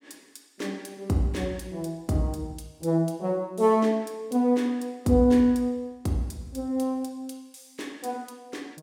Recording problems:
none

